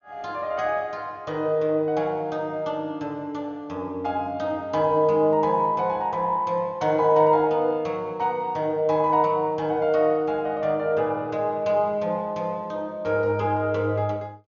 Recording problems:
treble cut off; nothing above 6.9 kHz

